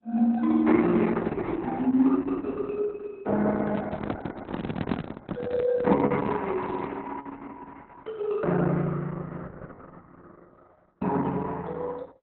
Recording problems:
codec artefacts; Opus, log-spectral distance 3 dB, nothing above 4 kHz
handling noise; from 3.5 to 7 s; peak +1 dB vs average level

